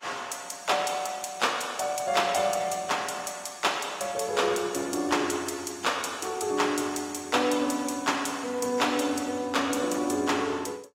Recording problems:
codec artefacts; AAC, log-spectral distance 4 dB, nothing above 16 kHz

